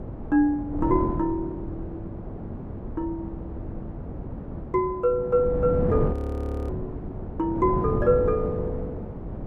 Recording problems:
wind noise; below 300 Hz, SNR 7 dB
frozen audio; at 6 s for 0.5 s

